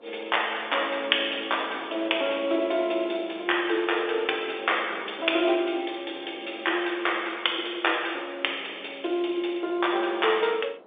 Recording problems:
telephone audio; 340 Hz to 3.6 kHz, G.711
wind on the microphone; below 690 Hz, SNR 21 dB

